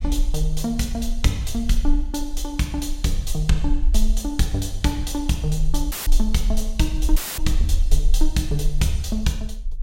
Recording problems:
rumble; below 40 Hz, strongest tone 22 Hz, SNR 2 dB
audio cutting out; at 6 s and at 7 s

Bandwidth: 16 kHz